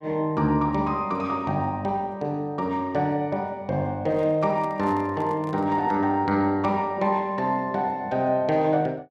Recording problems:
handling noise; from 4 to 6 s; peak -13 dB vs average level

